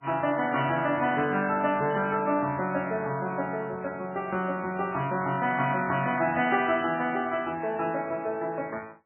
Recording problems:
lossy compression; MP3, log-spectral distance 3 dB, nothing above 2.7 kHz

